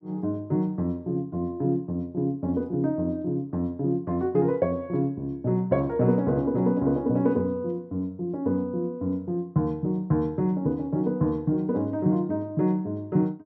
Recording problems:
none

